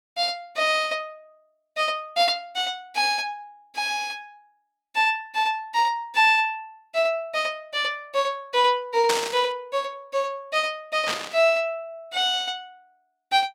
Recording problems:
burst of static; at 9 s and at 11 s; peak +4 dB vs average level

